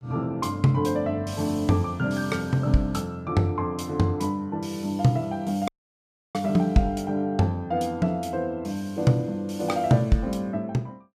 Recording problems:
audio cutting out; at 5.5 s for 0.5 s

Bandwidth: 15 kHz